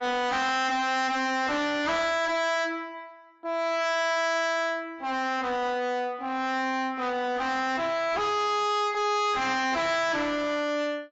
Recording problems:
codec artefacts; AAC, log-spectral distance 3 dB, nothing above 7.3 kHz
distortion; soft clipping, signal-to-distortion ratio 6 dB

